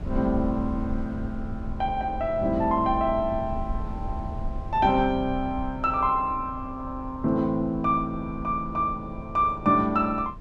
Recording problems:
rumble; below 100 Hz, SNR 11 dB

